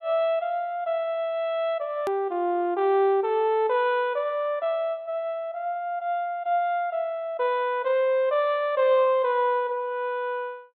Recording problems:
low-pass filter; nothing above 4 kHz
click at an edit; at 2 s

